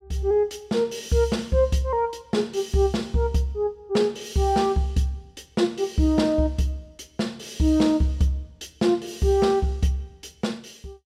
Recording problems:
none

